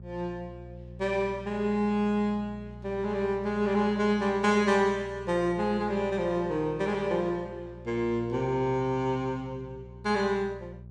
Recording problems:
electrical hum; 60 Hz, harmonics up to 600 Hz, SNR 17 dB

